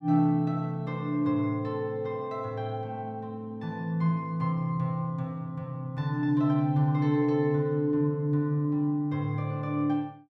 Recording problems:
none

